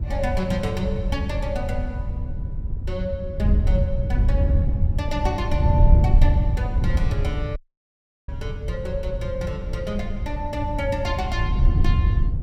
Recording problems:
wind on the microphone; below 96 Hz, SNR -5 dB
dropout; at 7.5 s for 0.5 s

